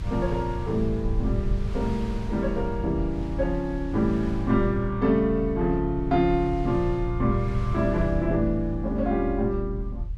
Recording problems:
rumble; below 72 Hz, strongest tone 40 Hz, SNR 7 dB
wind noise; below 1.4 kHz, SNR 19 dB

